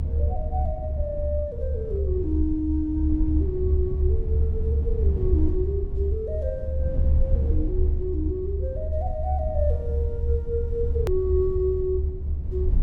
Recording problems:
low-frequency rumble; below 74 Hz, strongest tone 72 Hz, SNR -3 dB
edit click; at 11 s

